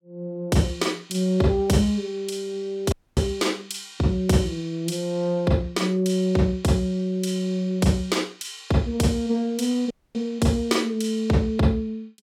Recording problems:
audio cutting out; at 3 s and at 10 s

